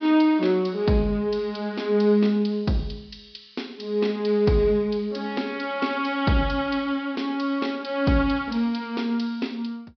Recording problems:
treble missing; nothing above 5.5 kHz

